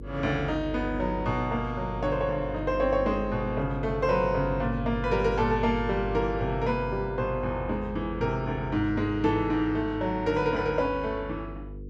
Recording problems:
hum; 50 Hz, harmonics up to 500 Hz, SNR 10 dB

